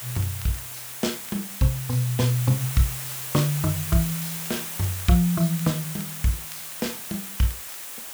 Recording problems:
background hiss; slope 0 dB per octave, SNR 6 dB
crackle; vinyl, SNR 27 dB

